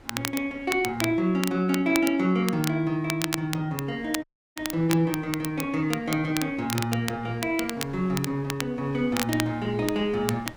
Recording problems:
wind noise; below 950 Hz, SNR 23 dB
crackling; vinyl, SNR 8 dB
dropout; at 4 s

